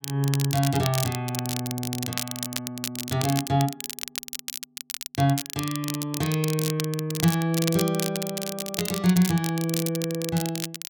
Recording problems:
crackling; vinyl, SNR 6 dB

